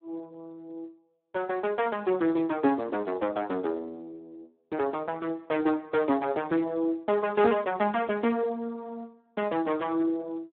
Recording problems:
phone line; 240 Hz to 3.5 kHz, Speex

